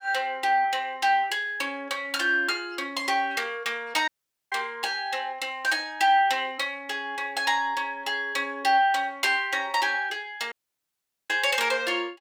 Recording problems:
dropout; at 4 s and at 11 s for 1 s

